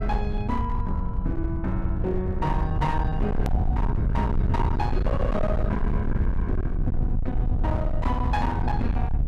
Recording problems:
distortion; hard clipping, signal-to-distortion ratio 7 dB
rumble; below 110 Hz, SNR -2 dB
click at an edit; at 3.5 s

